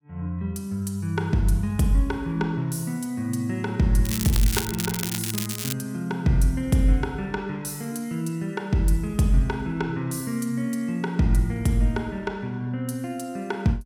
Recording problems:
crackle; from 4 to 5.5 s; loose cable, SNR 4 dB

